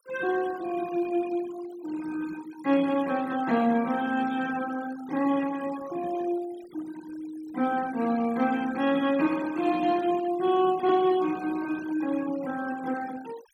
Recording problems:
denoising artefacts; signal-to-artefact ratio 18 dB

